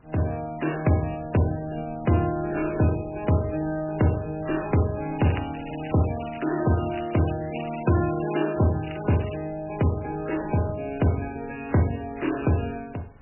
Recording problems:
lossy compression; MP3, log-spectral distance 9 dB, nothing above 2.8 kHz
wind on the microphone; below 360 Hz, SNR 22 dB
crackling; from 5 to 9.5 s; loose cable, SNR 17 dB

